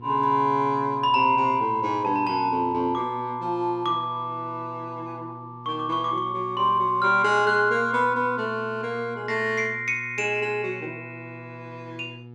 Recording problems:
electrical hum; 60 Hz, harmonics up to 840 Hz, SNR 19 dB

